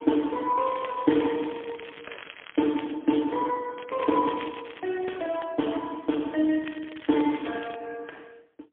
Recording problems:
phone line; 240 Hz to 3.3 kHz, AMR-NB, then MP3
crackling; from 0.5 to 3 s, from 4 to 5.5 s and from 6.5 to 7.5 s; loose cable, SNR 16 dB

